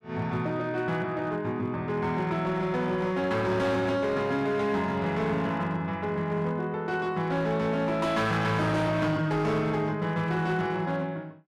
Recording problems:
distortion; hard clipping, uneven, signal-to-distortion ratio 11 dB

